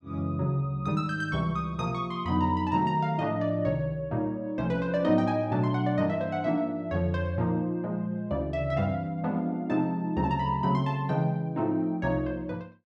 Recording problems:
none

